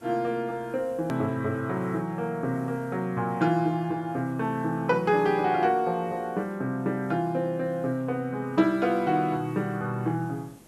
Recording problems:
background hiss; SNR 28 dB
edit click; at 1 s

